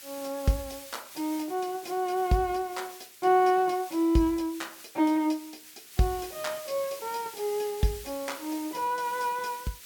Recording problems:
background hiss; SNR 15 dB

